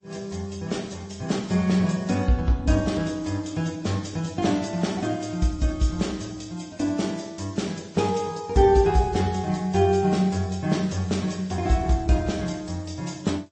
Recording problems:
lossy codec; MP3, then AAC, log-spectral distance 4 dB, nothing above 8.2 kHz

